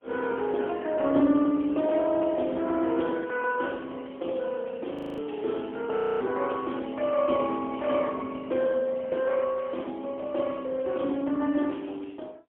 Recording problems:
phone line; 220 Hz to 3.3 kHz, AMR-NB, then MP3
frozen audio; at 5 s and at 6 s

